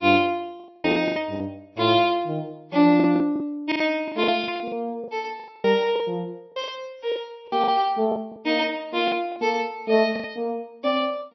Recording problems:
lossy codec; MP3, then MP3, log-spectral distance 2 dB, nothing above 5.7 kHz
lost packets; 12% of the sound replaced, filled with the last packet

